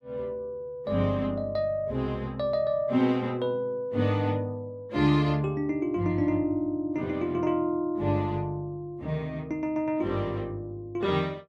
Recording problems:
none

